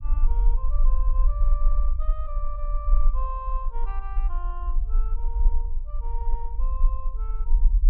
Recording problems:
low-frequency rumble; below 38 Hz, strongest tone 18 Hz, SNR -13 dB

